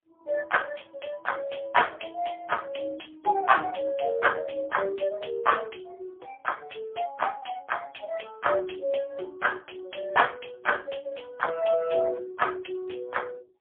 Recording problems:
phone line; 320 Hz to 3.3 kHz, AMR-NB, then MP3

